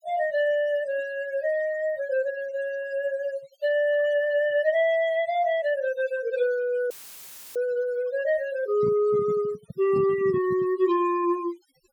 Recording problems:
denoising artefacts; signal-to-artefact ratio 21 dB
audio cutting out; at 7 s for 0.5 s; filled with static
microphone handling noise; from 8.5 to 11 s; peak -5 dB vs average level

